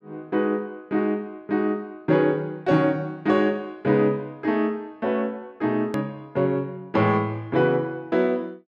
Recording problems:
click at an edit; at 6 s

